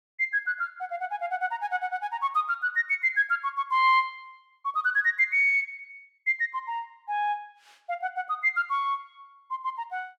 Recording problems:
none

